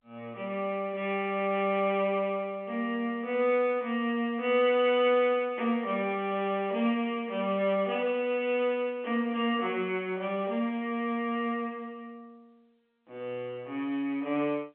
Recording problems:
phone line; 190 Hz to 3.4 kHz, G.711

